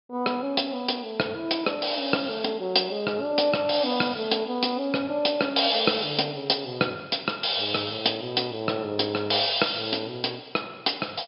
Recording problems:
low-pass filter; nothing above 5.5 kHz

